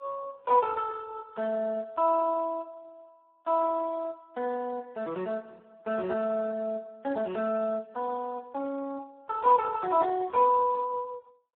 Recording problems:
phone line; 260 Hz to 2.5 kHz, Speex

